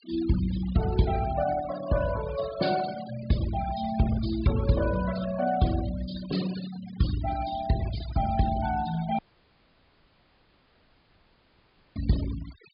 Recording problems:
treble cut off; nothing above 5.1 kHz
denoising artefacts; signal-to-artefact ratio 13 dB
audio cutting out; at 9 s for 3 s

